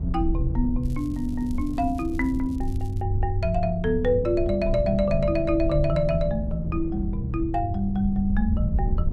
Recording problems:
low-frequency rumble; below 74 Hz, SNR 7 dB
wind noise; below 160 Hz, SNR 10 dB
crackling; from 1 to 3 s; loose cable, SNR 29 dB

